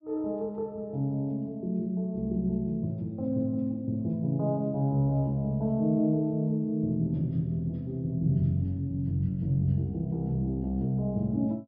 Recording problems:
treble cut off; nothing above 5.5 kHz

